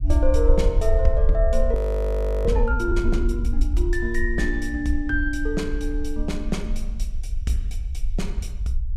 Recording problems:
rumble; below 56 Hz, SNR 0 dB
audio freezing; at 1.5 s for 0.5 s

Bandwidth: 15 kHz